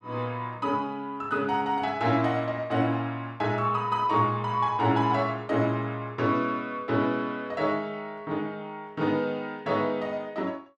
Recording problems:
none

